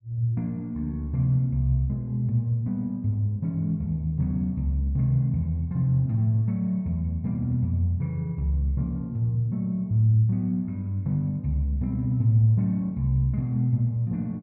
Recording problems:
none

